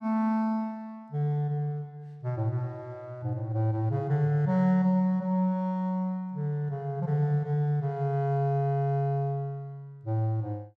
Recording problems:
none

